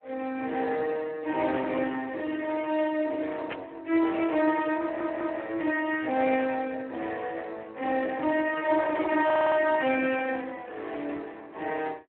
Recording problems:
telephone audio; 280 Hz to 3.4 kHz, Speex
static burst; at 3.5 s; peak -4 dB vs average level
audio stuttering; at 5 s and at 9.5 s

